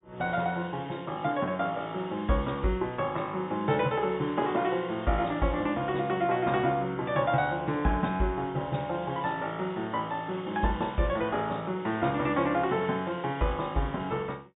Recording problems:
treble cut off; nothing above 4 kHz

